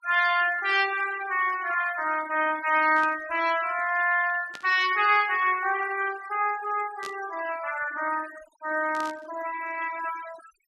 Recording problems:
denoising artefacts; signal-to-artefact ratio 16 dB
static burst; 4 times, first at 3 s; peak -10 dB vs average level

